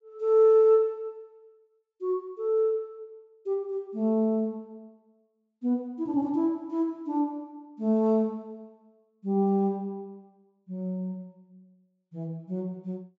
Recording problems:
treble cut off; nothing above 8 kHz

